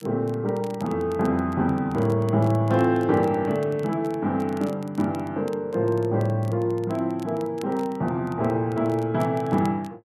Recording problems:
crackling; vinyl, SNR 27 dB

